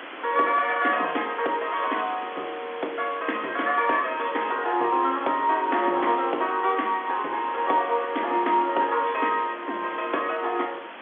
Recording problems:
telephone audio; 240 Hz to 3.5 kHz, G.711
hiss; SNR 15 dB
wind on the microphone; below 1.6 kHz, SNR 18 dB

